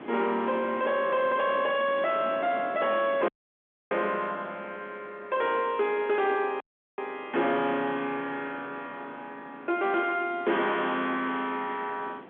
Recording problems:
phone line; 190 Hz to 3.5 kHz, G.711
distortion; soft clipping, signal-to-distortion ratio 7 dB
wind on the microphone; below 1 kHz, SNR 17 dB
audio cutting out; at 3.5 s for 0.5 s and at 6.5 s

